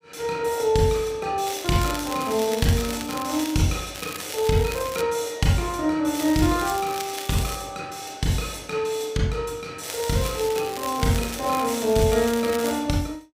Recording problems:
crackle; 4 times, first at 1.5 s; loose cable, SNR 11 dB

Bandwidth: 15.5 kHz